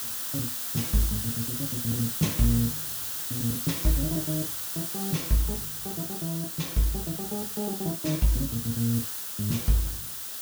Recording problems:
background hiss; SNR 1 dB

